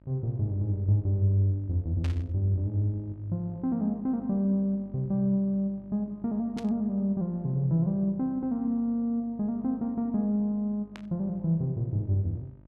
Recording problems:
electrical hum; 50 Hz, harmonics up to 950 Hz, SNR 25 dB
static burst; at 2 s, at 6.5 s and at 11 s; peak -9 dB vs average level

